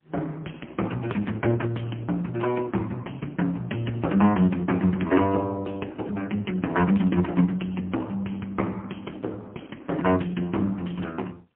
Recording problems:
telephone audio; 150 Hz to 3.1 kHz, AMR-NB, then MP3

